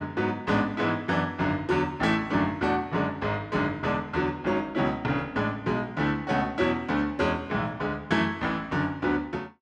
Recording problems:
none

